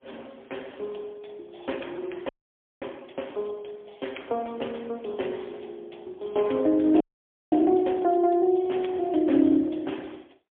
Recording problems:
phone line; 240 Hz to 3.4 kHz, AMR-NB, then MP3
audio freezing; at 2.5 s for 0.5 s and at 7 s for 0.5 s

